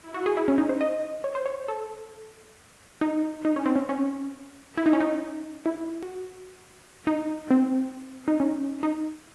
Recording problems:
codec artefacts; AAC, log-spectral distance 6 dB
hiss; slope -3 dB per octave, SNR 26 dB
hard cut with a click; at 6 s

